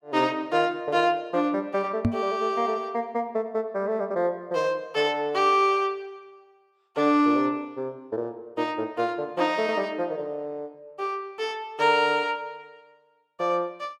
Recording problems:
knock on the microphone; at 2 s; peak +6 dB vs average level

